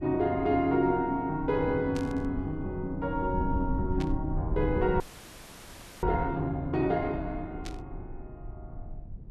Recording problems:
low-frequency rumble; below 98 Hz, SNR 10 dB
burst of static; at 2 s, at 4 s and at 7.5 s; peak -8 dB vs average level
frozen audio; at 5 s for 1 s

